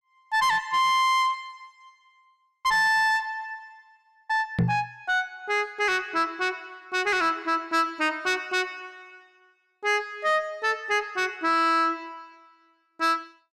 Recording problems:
distortion; soft clipping, signal-to-distortion ratio 11 dB
knock on the microphone; at 4.5 s; peak +4 dB vs average level

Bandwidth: 13 kHz